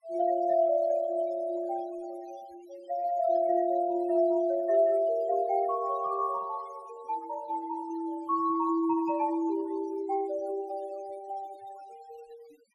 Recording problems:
denoising artefacts; signal-to-artefact ratio 22 dB

